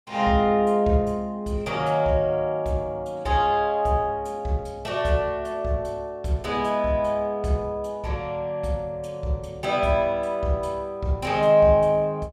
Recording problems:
none

